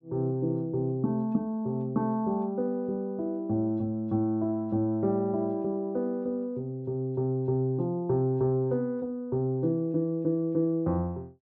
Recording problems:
none

